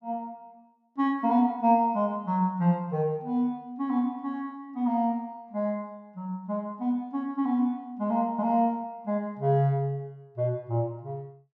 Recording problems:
none

